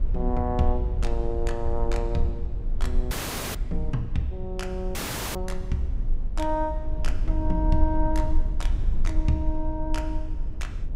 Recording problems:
low-frequency rumble; below 48 Hz, strongest tone 18 Hz, SNR 0 dB
dropout; at 3 s and at 5 s

